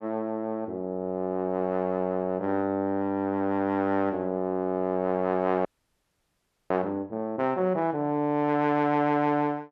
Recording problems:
frozen audio; at 5.5 s for 1 s

